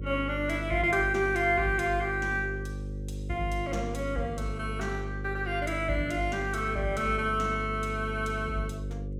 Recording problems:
hum; 50 Hz, harmonics up to 550 Hz, SNR 7 dB

